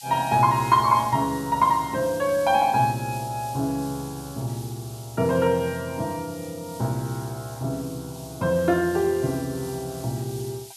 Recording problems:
background hiss; SNR 17 dB

